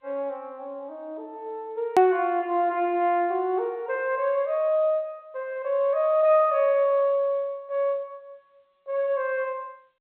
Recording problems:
phone line; 280 Hz to 3.1 kHz, G.711
edit click; at 2 s

